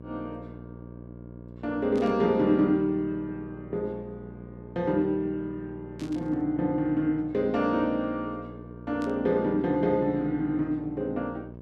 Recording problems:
hum; 60 Hz, harmonics up to 660 Hz, SNR 16 dB
static burst; at 2 s, at 6 s and at 9 s; peak -15 dB vs average level

